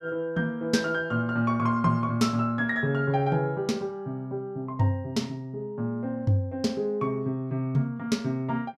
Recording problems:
none

